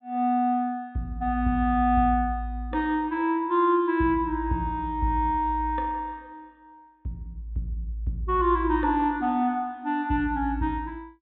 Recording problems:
low-pass filter; nothing above 4 kHz

